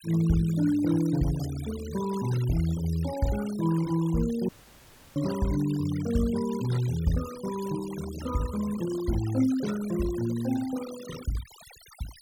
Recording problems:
denoising artefacts; signal-to-artefact ratio 15 dB
dropout; at 4.5 s for 0.5 s

